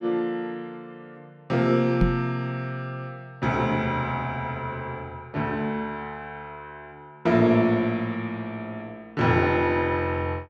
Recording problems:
knock on the microphone; at 2 s; peak +7 dB vs average level

